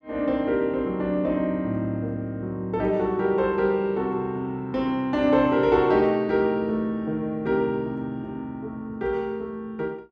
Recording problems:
none

